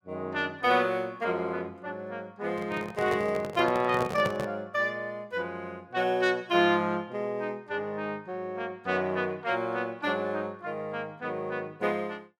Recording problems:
handling noise; from 2.5 to 4.5 s; peak +2 dB vs average level

